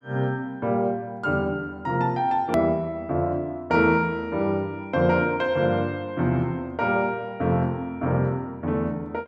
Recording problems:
click at an edit; at 2.5 s

